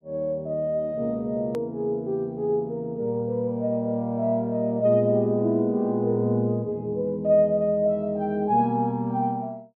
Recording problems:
edit click; at 1.5 s

